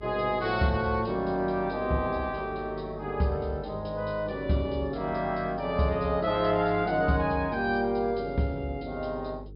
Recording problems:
treble missing; nothing above 5.5 kHz
electrical hum; 50 Hz, harmonics up to 450 Hz, SNR 18 dB

